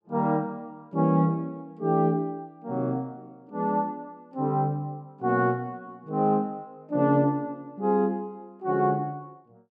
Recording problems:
none

